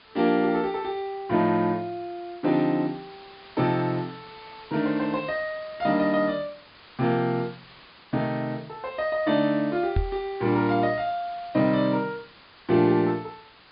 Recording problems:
treble cut off; nothing above 5 kHz
background hiss; SNR 23 dB
knock on the microphone; at 10 s; peak +3 dB vs average level

